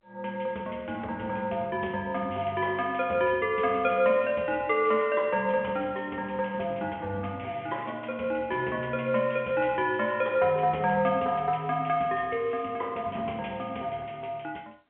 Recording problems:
telephone audio; 280 Hz to 3.7 kHz, G.711

